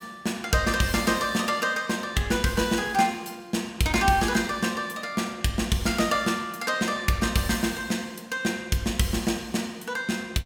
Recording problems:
none

